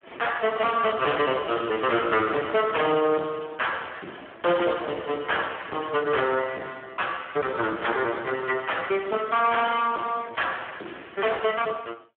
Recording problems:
phone line; 220 Hz to 2.9 kHz, Speex
distorted audio; soft clipping, signal-to-distortion ratio 10 dB

